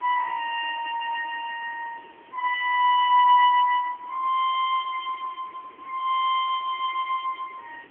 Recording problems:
phone line; 990 Hz to 2 kHz, AMR-NB
background hiss; SNR 27 dB

